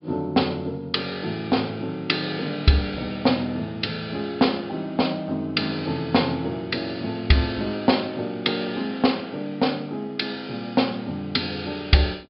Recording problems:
treble cut off; nothing above 5.2 kHz

